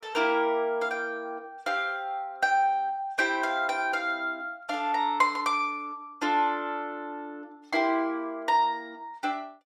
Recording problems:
none

